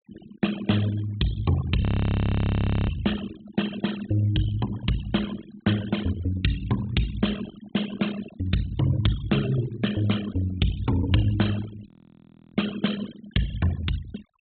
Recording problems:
treble missing; nothing above 4 kHz
denoising artefacts; signal-to-artefact ratio 13 dB
frozen audio; at 2 s for 1 s and at 12 s for 0.5 s

